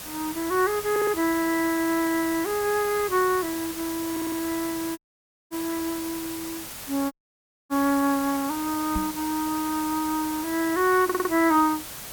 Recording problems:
hiss; slope -1 dB per octave, SNR 9 dB
stutter; at 1 s, at 4 s and at 11 s
audio cutting out; at 5 s for 0.5 s and at 7 s for 0.5 s
microphone bump; at 9 s; peak -1 dB vs average level

